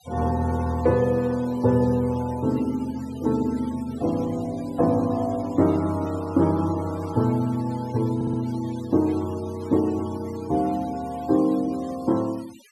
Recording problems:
noise reduction artefacts; signal-to-artefact ratio 22 dB
audio stuttering; at 8 s

